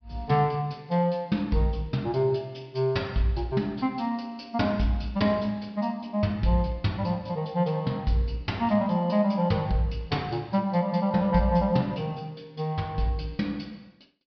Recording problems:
treble missing; nothing above 5.5 kHz

